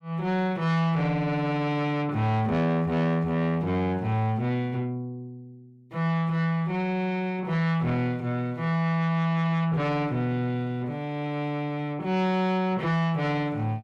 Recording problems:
distortion; soft clipping, signal-to-distortion ratio 10 dB

